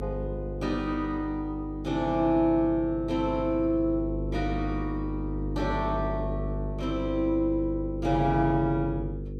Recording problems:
electrical hum; 50 Hz, harmonics up to 500 Hz, SNR 7 dB

